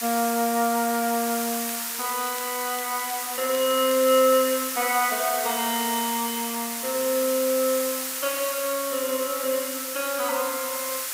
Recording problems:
hiss; SNR 3 dB
crackling; from 1.5 to 4 s; loose cable, SNR 18 dB

